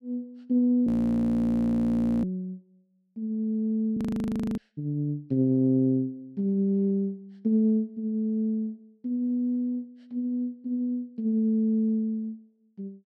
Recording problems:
audio freezing; at 1 s for 1.5 s and at 4 s for 0.5 s

